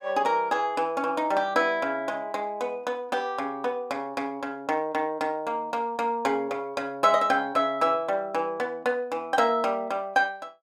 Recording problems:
none

